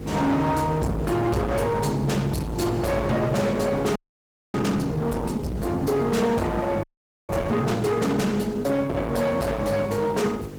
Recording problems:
codec artefacts; Opus, log-spectral distance 3 dB, nothing above 19 kHz
distorted audio; hard clipping, signal-to-distortion ratio 6 dB
hum; 50 Hz, harmonics up to 800 Hz, SNR 11 dB
hiss; slope -6 dB per octave, SNR 23 dB
frozen audio; at 4 s for 0.5 s and at 7 s

